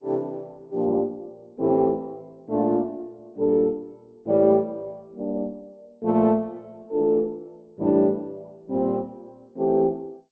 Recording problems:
codec artefacts; Opus, then G.722, log-spectral distance 2 dB

